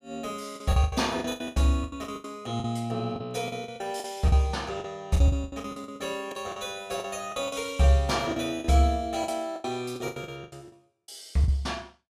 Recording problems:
lost packets; 17% of the sound replaced, filled with the last packet

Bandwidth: 14.5 kHz